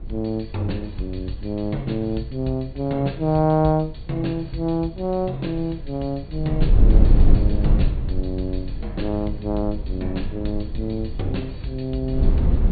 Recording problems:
low-pass filter; nothing above 4.5 kHz
wind noise; below 70 Hz, SNR -1 dB

